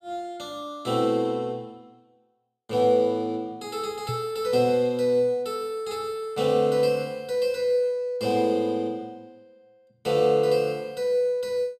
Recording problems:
microphone bump; at 4 s; peak -4 dB vs average level

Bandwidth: 15.5 kHz